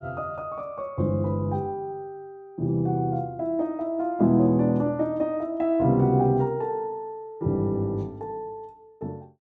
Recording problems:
none

